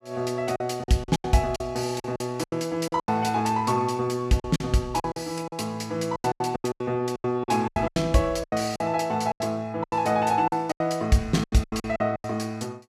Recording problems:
lost packets; 16% of the sound replaced, filled with silence

